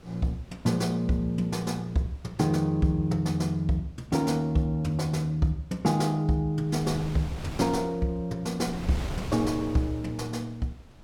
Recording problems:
wind on the microphone; below 470 Hz, SNR 13 dB

